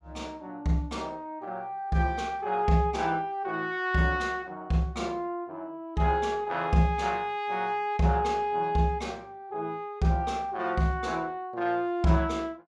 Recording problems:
none

